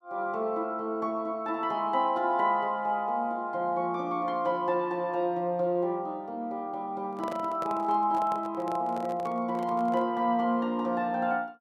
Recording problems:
handling noise; from 7 to 10 s; peak -7 dB vs average level

